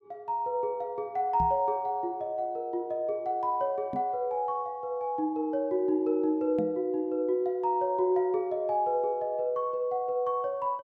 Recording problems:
microphone thump; at 1.5 s, at 4 s and at 6.5 s; peak -3 dB vs average level

